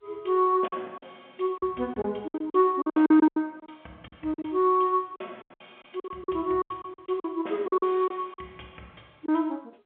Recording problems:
phone line; 260 Hz to 3.4 kHz, G.711
lost packets; 14% of the sound replaced, filled with silence

